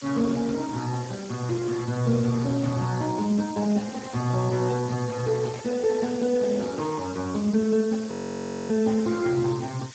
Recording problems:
lossy codec; Speex, log-spectral distance 9 dB, nothing above 19.5 kHz
background hiss; slope +3 dB per octave, SNR 17 dB
microphone handling noise; from 3.5 to 7 s; peak -12 dB vs average level
frozen audio; at 8 s for 0.5 s

